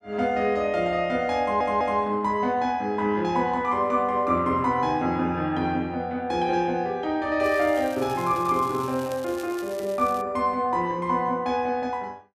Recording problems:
audio stuttering; at 1.5 s
crackle; from 7.5 to 10 s; loose cable, SNR 20 dB

